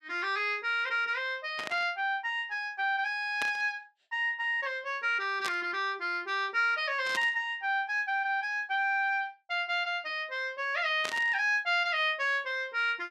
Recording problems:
burst of static; 5 times, first at 1.5 s; peak -2 dB vs average level

